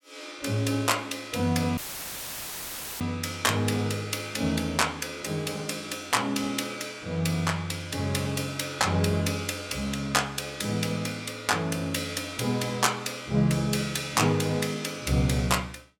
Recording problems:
audio cutting out; at 2 s for 1 s; filled with static

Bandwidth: 17 kHz